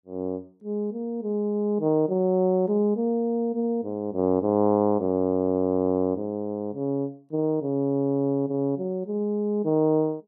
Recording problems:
none

